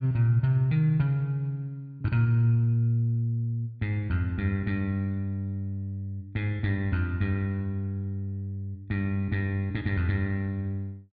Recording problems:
none

